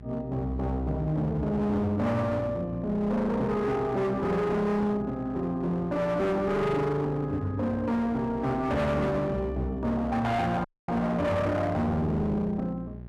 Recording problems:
distortion; hard clipping, uneven, signal-to-distortion ratio 7 dB
electrical hum; 60 Hz, harmonics up to 600 Hz, SNR 16 dB
dropout; at 11 s

